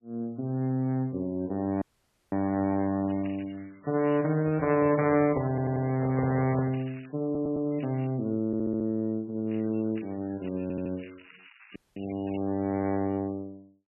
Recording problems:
codec artefacts; MP3, log-spectral distance 7 dB, nothing above 2.4 kHz
dropout; at 2 s and at 12 s
crackling; from 3 to 4.5 s, from 6.5 to 8 s and from 9.5 to 13 s; loose cable, SNR 23 dB
handling noise; from 4.5 to 7 s; peak -1 dB vs average level
stutter; 4 times, first at 5.5 s

